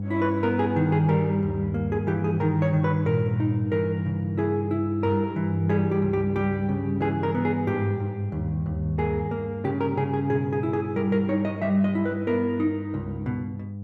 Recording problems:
hum; 50 Hz, harmonics up to 500 Hz, SNR 6 dB

